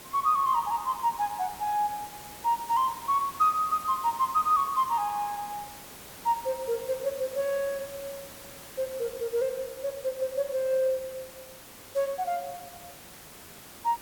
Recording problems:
hiss; slope -3 dB per octave, SNR 15 dB

